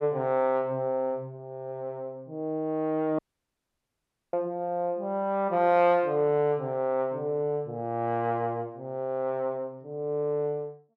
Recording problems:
dropout; at 3 s for 1 s

